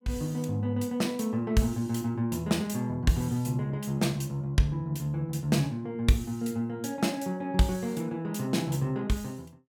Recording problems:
none

